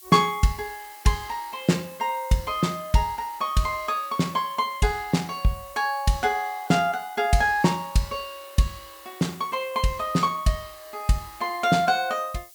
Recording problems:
background hiss; slope +5 dB per octave, SNR 20 dB

